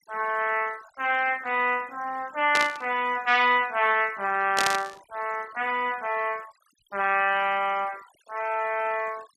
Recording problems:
denoising artefacts; signal-to-artefact ratio 22 dB
burst of static; at 2.5 s and at 4.5 s; peak +4 dB vs average level

